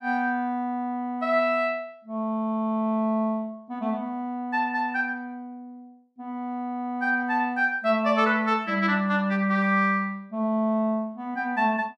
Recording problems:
none

